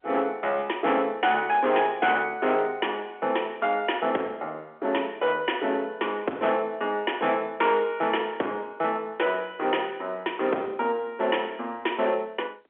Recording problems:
telephone audio; 260 Hz to 3.4 kHz, G.711
distorted audio; hard clipping, signal-to-distortion ratio 12 dB

